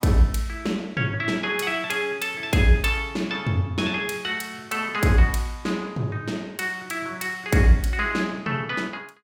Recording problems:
none

